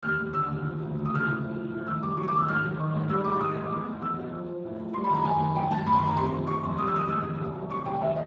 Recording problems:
lossy codec; Speex, log-spectral distance 3 dB

